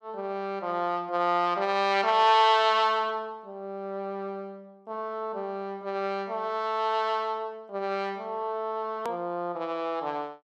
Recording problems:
hard cut with a click; at 9 s

